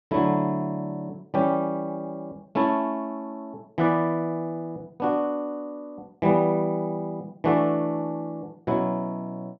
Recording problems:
treble cut off; nothing above 7.8 kHz

